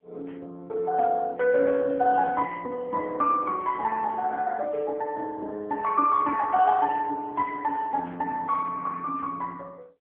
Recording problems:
telephone audio; 300 Hz to 2.2 kHz, AMR-NB

